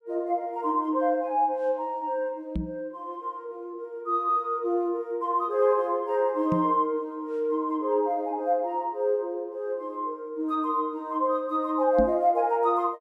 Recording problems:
microphone bump; at 2.5 s, at 6.5 s and at 12 s; peak +2 dB vs average level

